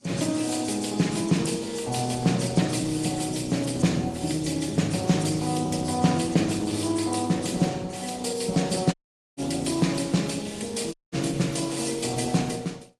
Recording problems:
lossy codec; Opus, then AAC, log-spectral distance 6 dB
crackling; from 3 to 5.5 s and from 9.5 to 12 s; loose cable, SNR 24 dB
dropout; at 9 s and at 11 s

